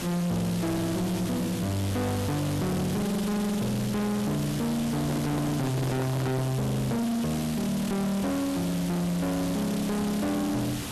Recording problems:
distortion; soft clipping, signal-to-distortion ratio 5 dB
hiss; SNR 7 dB
handling noise; from 5 to 6.5 s; peak +3 dB vs average level

